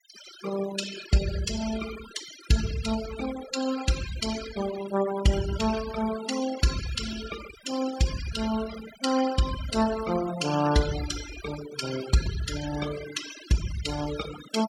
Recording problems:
denoising artefacts; signal-to-artefact ratio 8 dB

